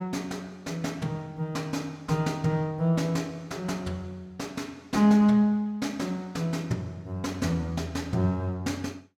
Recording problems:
none

